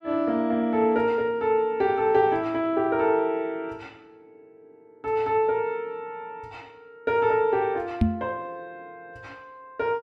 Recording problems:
microphone bump; at 8 s; peak +7 dB vs average level

